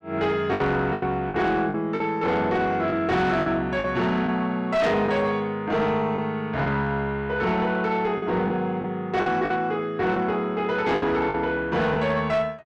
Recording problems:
distorted audio; soft clipping, signal-to-distortion ratio 11 dB
lost packets; 6% of the sound replaced, filled with the last packet

